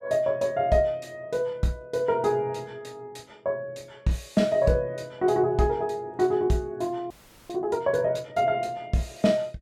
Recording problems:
audio freezing; at 7 s

